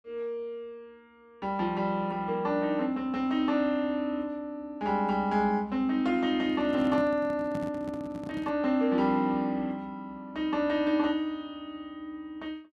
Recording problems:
microphone handling noise; from 6.5 to 8.5 s; peak -5 dB vs average level

